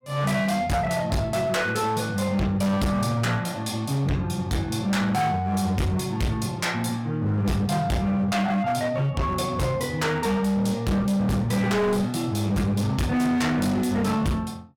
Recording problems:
distorted audio; hard clipping, signal-to-distortion ratio 7 dB

